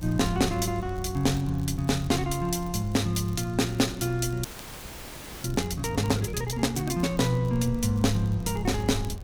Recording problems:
rumble; below 82 Hz, SNR 13 dB
crackling; vinyl, SNR 26 dB
audio freezing; at 4.5 s for 1 s

